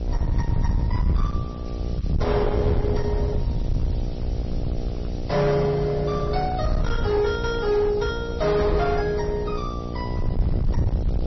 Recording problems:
codec artefacts; Opus, then MP3, log-spectral distance 3 dB, nothing above 5.7 kHz
distorted audio; hard clipping, uneven, signal-to-distortion ratio 11 dB
mains hum; 60 Hz, harmonics up to 1.3 kHz, SNR 10 dB
hiss; SNR 28 dB
wind noise; below 110 Hz, SNR 3 dB

